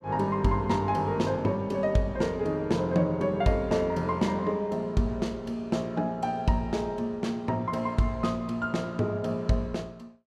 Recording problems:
none

